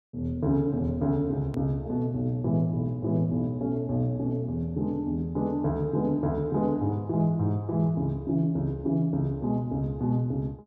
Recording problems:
edit click; at 1.5 s

